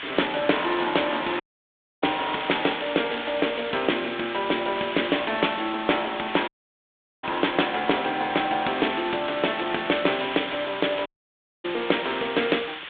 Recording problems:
phone line; 260 Hz to 3.7 kHz, G.726
hiss; SNR 8 dB
dropout; at 1.5 s for 0.5 s, at 6.5 s for 1 s and at 11 s for 0.5 s

